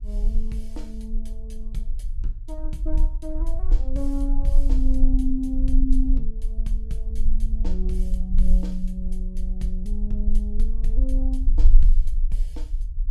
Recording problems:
rumble; below 36 Hz, strongest tone 20 Hz, SNR -7 dB

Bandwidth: 15 kHz